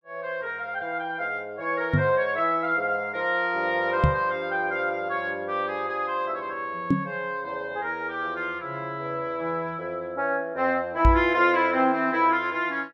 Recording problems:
microphone thump; 4 times, first at 2 s; peak +8 dB vs average level

